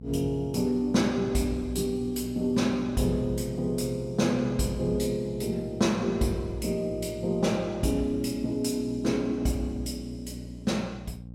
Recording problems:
hum; 60 Hz, harmonics up to 540 Hz, SNR 15 dB

